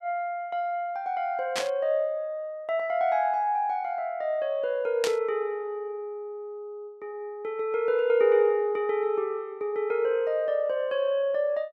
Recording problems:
static burst; at 1.5 s and at 5 s; peak +2 dB vs average level

